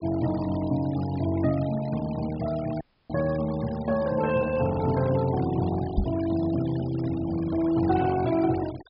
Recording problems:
treble cut off; nothing above 5.5 kHz
noise reduction artefacts; signal-to-artefact ratio 17 dB
dropout; at 3 s
knock on the microphone; at 6 s; peak +5 dB vs average level

